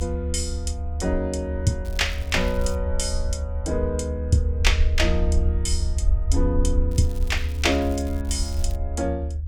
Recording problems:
rumble; below 76 Hz, SNR 0 dB
crackle; at 2 s and from 7 to 9 s; loose cable, SNR 21 dB

